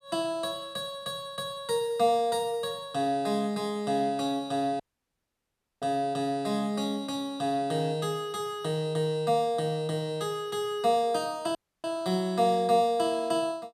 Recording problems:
audio cutting out; at 5 s for 1 s and at 12 s

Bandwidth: 14 kHz